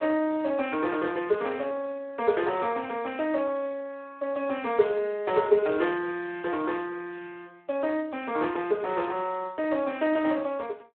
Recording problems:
telephone audio; 280 Hz to 3.4 kHz, Speex

